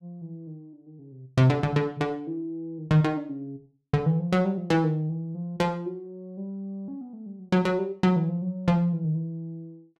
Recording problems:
none

